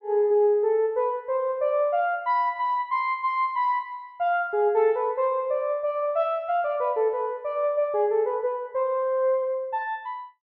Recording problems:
none

